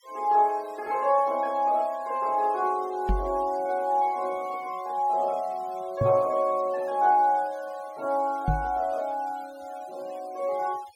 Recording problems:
noise reduction artefacts; signal-to-artefact ratio 26 dB
microphone thump; at 3 s, at 6 s and at 8.5 s; peak +3 dB vs average level

